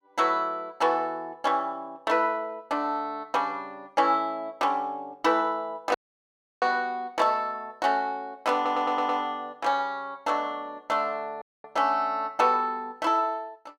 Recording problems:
audio cutting out; at 6 s for 0.5 s and at 11 s
audio stuttering; at 8.5 s

